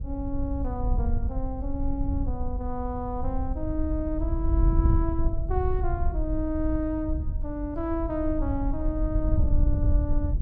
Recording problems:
wind on the microphone; below 74 Hz, SNR -2 dB

